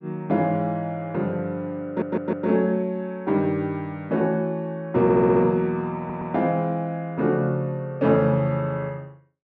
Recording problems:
audio stuttering; at 2 s, at 5 s and at 6 s

